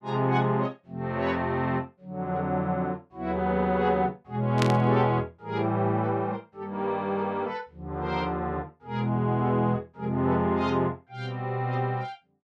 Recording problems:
burst of static; at 4.5 s; peak +3 dB vs average level

